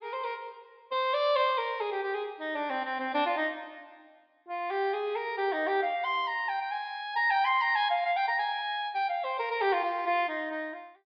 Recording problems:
treble cut off; nothing above 5.5 kHz

